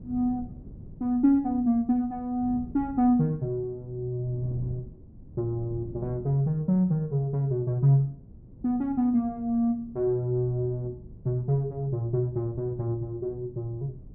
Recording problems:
low-pass filter; nothing above 5.5 kHz
wind noise; below 190 Hz, SNR 19 dB

